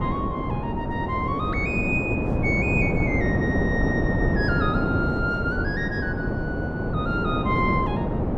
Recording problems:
wind on the microphone; below 420 Hz, SNR -3 dB

